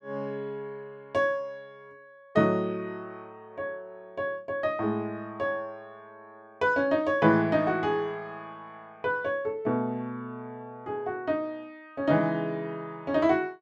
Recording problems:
none

